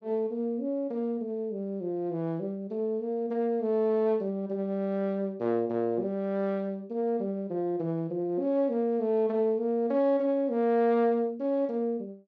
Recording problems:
none

